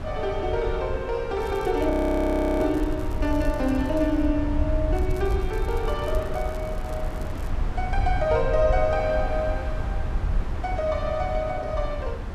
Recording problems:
low-frequency rumble; below 72 Hz, SNR 5 dB
wind on the microphone; below 700 Hz, SNR 10 dB
crackling; from 1.5 to 4.5 s and from 5 to 7.5 s; loose cable, SNR 25 dB
frozen audio; at 2 s for 0.5 s

